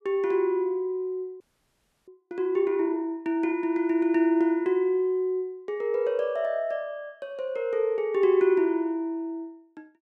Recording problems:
audio freezing; at 1.5 s for 0.5 s

